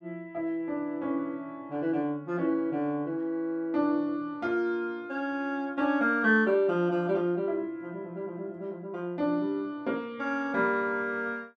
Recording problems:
none

